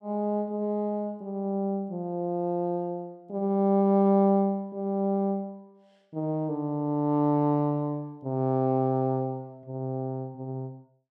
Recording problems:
none

